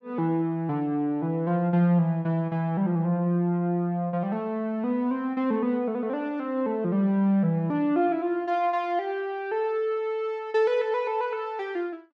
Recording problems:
none

